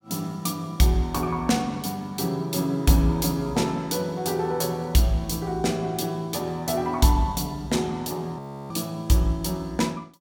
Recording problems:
audio freezing; at 8.5 s

